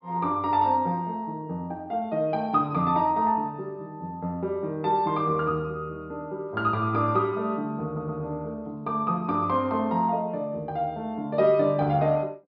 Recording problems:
treble cut off; nothing above 5.5 kHz
stutter; at 8 s

